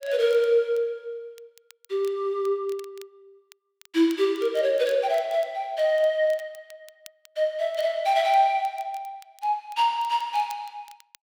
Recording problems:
crackling; vinyl, SNR 28 dB

